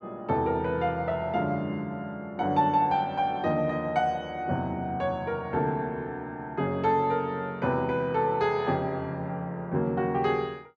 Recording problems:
none

